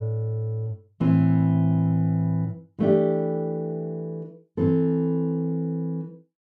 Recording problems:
none

